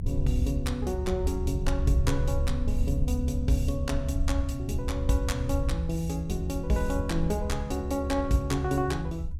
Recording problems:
low-frequency rumble; below 76 Hz, SNR 2 dB

